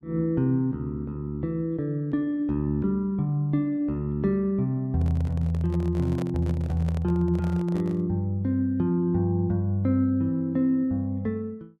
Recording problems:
handling noise; from 5 to 8 s; peak -8 dB vs average level

